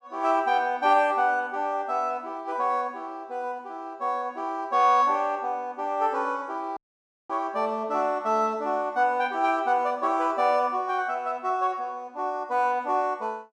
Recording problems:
audio cutting out; at 7 s for 0.5 s

